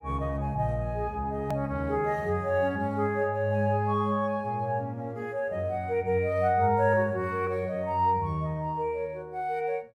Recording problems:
hard cut with a click; at 1.5 s

